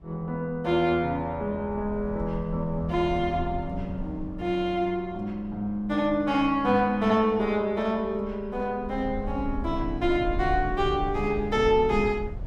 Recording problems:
rumble; below 80 Hz, SNR 12 dB

